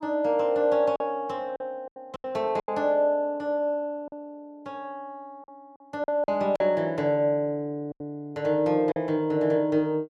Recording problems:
lost packets; 7% of the sound replaced, filled with silence

